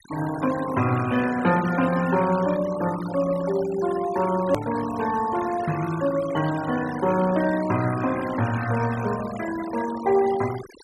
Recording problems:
noise reduction artefacts; signal-to-artefact ratio 13 dB
edit click; at 4.5 s

